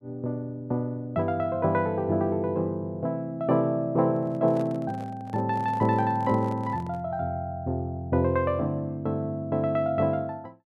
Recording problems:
microphone handling noise; from 4 to 7 s; peak -12 dB vs average level

